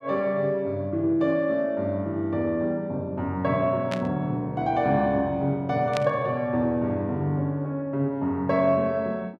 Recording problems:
static burst; at 4 s and at 6 s; peak -3 dB vs average level

